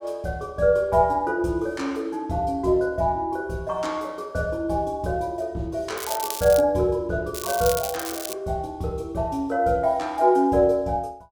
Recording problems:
crackle; at 6 s and at 7.5 s; loose cable, SNR 8 dB

